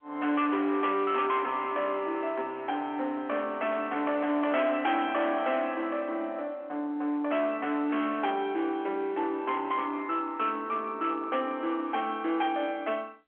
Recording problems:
phone line; 240 Hz to 3.4 kHz, G.711
distortion; hard clipping, uneven, signal-to-distortion ratio 11 dB

